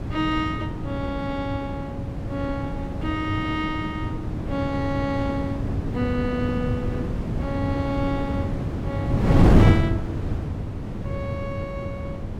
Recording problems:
wind noise; below 270 Hz, SNR -3 dB

